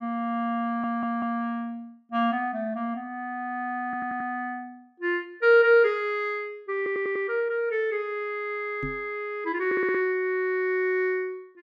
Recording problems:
audio stuttering; 4 times, first at 0.5 s
microphone thump; at 9 s; peak -4 dB vs average level

